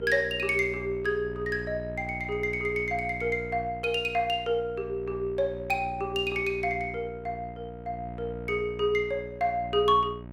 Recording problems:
hum; 60 Hz, harmonics up to 1.3 kHz, SNR 12 dB

